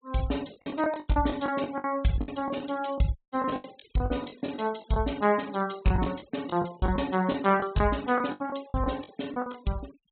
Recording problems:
treble missing; nothing above 4 kHz
noise reduction artefacts; signal-to-artefact ratio 21 dB
packet loss; 15% of the sound replaced, filled with the last packet
dropout; at 3 s

